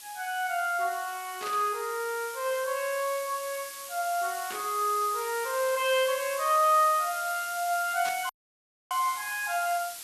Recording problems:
hiss; slope +3 dB per octave, SNR 11 dB
static burst; at 1.5 s, at 4.5 s and at 8 s; peak -6 dB vs average level
audio cutting out; at 8.5 s for 0.5 s

